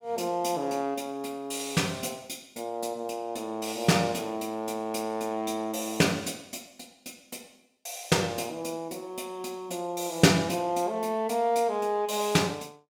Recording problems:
none

